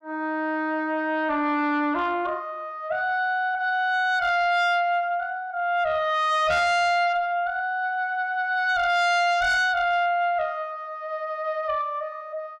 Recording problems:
distortion; soft clipping, signal-to-distortion ratio 10 dB

